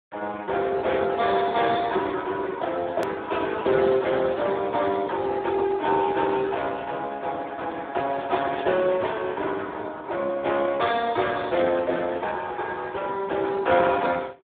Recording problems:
telephone audio; 300 Hz to 3.8 kHz, Speex
edit click; at 3 s

